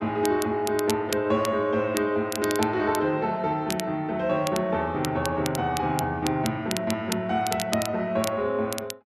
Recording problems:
crackle; vinyl, SNR 10 dB

